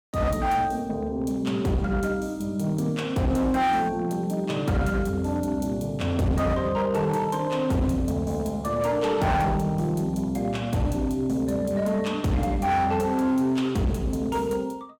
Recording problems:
distortion; hard clipping, signal-to-distortion ratio 10 dB

